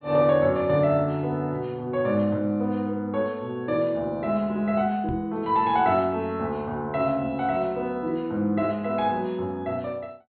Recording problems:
treble cut off; nothing above 4.3 kHz
microphone thump; at 5 s; peak -4 dB vs average level

